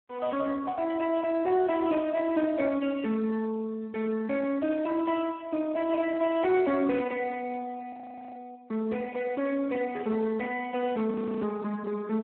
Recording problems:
phone line; 240 Hz to 3 kHz, Speex
audio freezing; at 8 s and at 11 s

